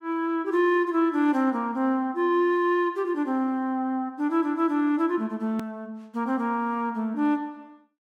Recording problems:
hard cut with a click; at 5.5 s

